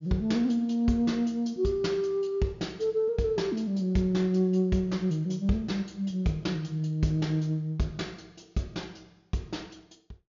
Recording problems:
low-pass filter; nothing above 7.1 kHz

